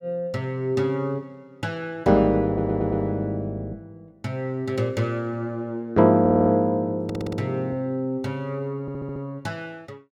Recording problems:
stutter; 4 times, first at 2.5 s

